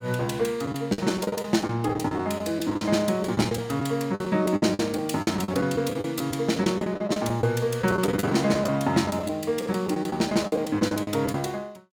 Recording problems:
packet loss; 14% of the sound replaced, filled with the last packet

